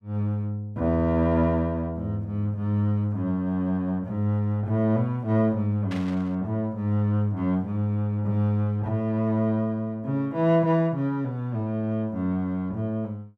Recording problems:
static burst; at 6 s; peak -9 dB vs average level

